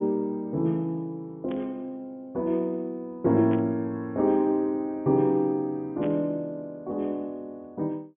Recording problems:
low-pass filter; nothing above 3.4 kHz
burst of static; at 1.5 s, at 3.5 s and at 6 s; peak -12 dB vs average level

